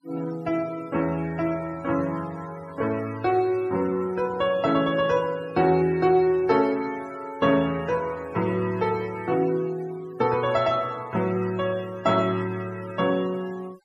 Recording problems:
denoising artefacts; signal-to-artefact ratio 21 dB

